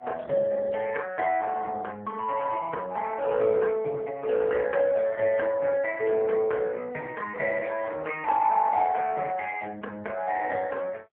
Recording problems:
telephone audio; 240 Hz to 3.3 kHz, AMR-NB

